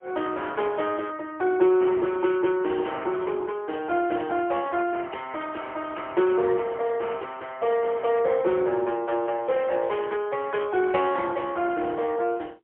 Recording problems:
phone line; 320 Hz to 3.4 kHz, AMR-NB, then MP3

